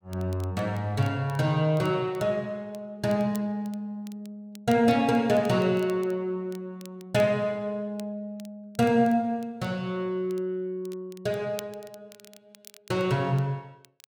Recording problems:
crackling; vinyl, SNR 25 dB

